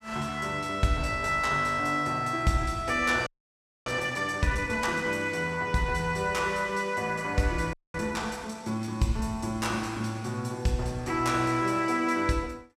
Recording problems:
audio freezing; at 3.5 s for 0.5 s and at 7.5 s

